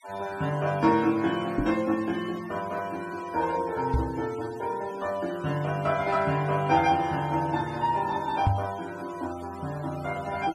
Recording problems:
noise reduction artefacts; signal-to-artefact ratio 18 dB
microphone bump; at 1.5 s, at 4 s and at 8.5 s; peak +7 dB vs average level

